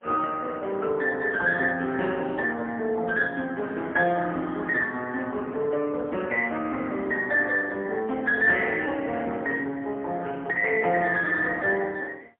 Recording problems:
phone line; 260 Hz to 3.3 kHz, AMR-NB, then MP3

